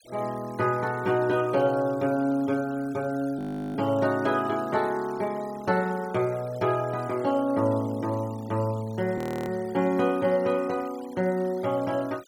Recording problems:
noise reduction artefacts; signal-to-artefact ratio 22 dB
audio freezing; at 3.5 s and at 9 s

